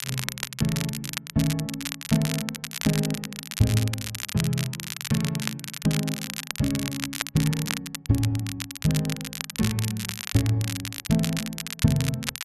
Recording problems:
crackle; vinyl, SNR 5 dB

